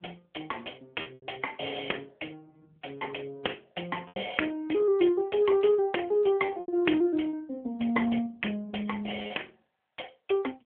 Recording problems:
phone line; 260 Hz to 3.3 kHz, AMR-NB
packet loss; 5% of the sound replaced, filled with repeated pitch periods

